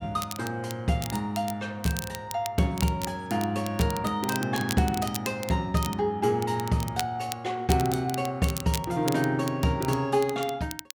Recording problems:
crackle; vinyl, SNR 11 dB

